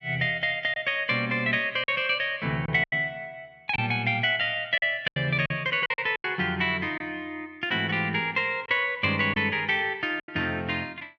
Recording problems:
lost packets; 6% of the sound replaced, filled with silence

